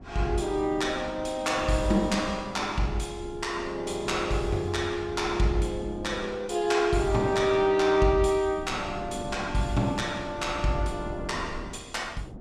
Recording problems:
wind on the microphone; below 310 Hz, SNR 15 dB

